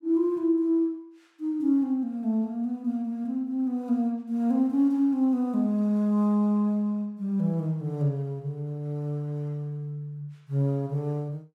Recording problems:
none

